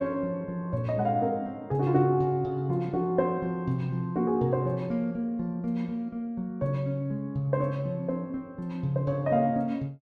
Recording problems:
none

